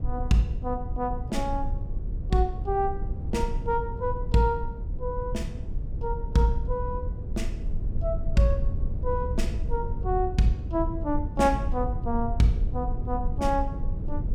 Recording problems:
rumble; below 80 Hz, SNR 4 dB

